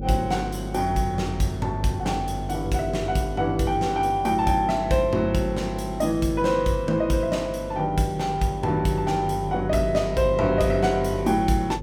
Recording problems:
hum; 50 Hz, harmonics up to 550 Hz, SNR 10 dB

